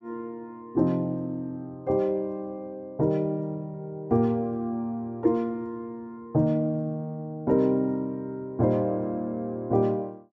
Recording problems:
none

